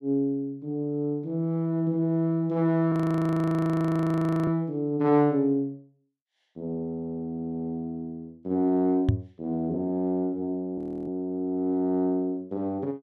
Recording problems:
frozen audio; at 3 s for 1.5 s and at 11 s
microphone thump; at 9 s; peak +8 dB vs average level

